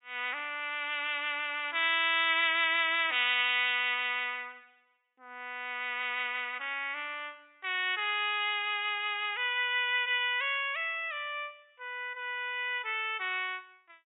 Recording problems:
treble missing; nothing above 4 kHz

